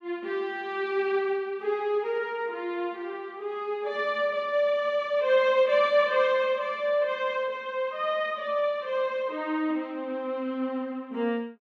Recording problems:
none

